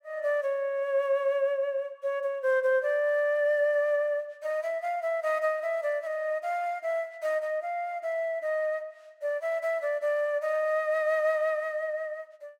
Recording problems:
none

